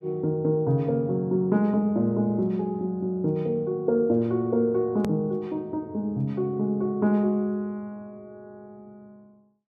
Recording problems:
click at an edit; at 5 s

